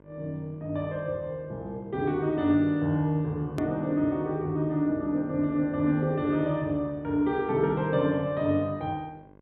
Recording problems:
low-pass filter; nothing above 4 kHz
electrical hum; 50 Hz, harmonics up to 1.6 kHz, SNR 27 dB
edit click; at 3.5 s

